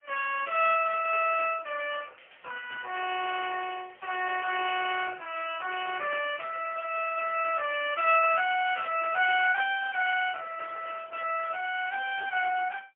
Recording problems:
telephone audio; 520 Hz to 3.1 kHz, AMR-NB, then MP3

